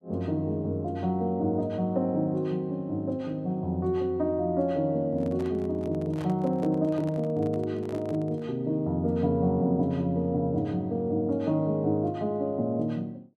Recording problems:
microphone handling noise; from 5 to 8.5 s; peak -10 dB vs average level

